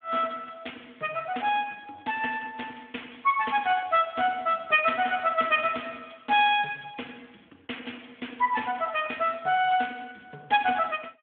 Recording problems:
phone line; 300 Hz to 3.5 kHz, Speex

